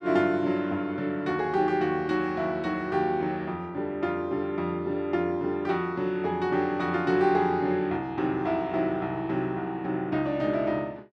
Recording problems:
none

